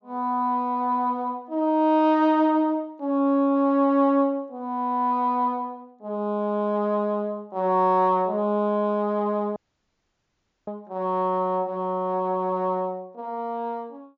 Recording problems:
low-pass filter; nothing above 7.2 kHz
audio cutting out; at 9.5 s for 1 s

